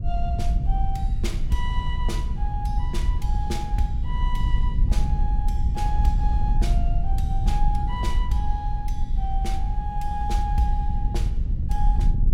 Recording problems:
wind on the microphone; below 62 Hz, SNR -7 dB

